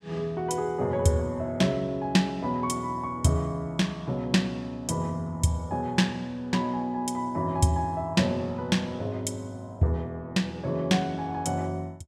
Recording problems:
none

